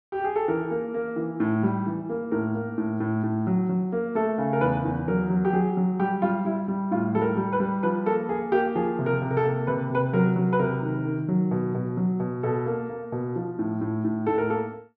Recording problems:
none

